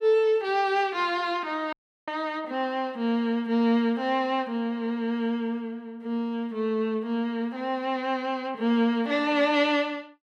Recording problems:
audio cutting out; at 1.5 s

